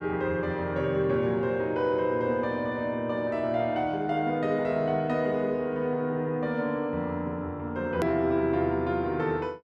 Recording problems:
edit click; at 8 s

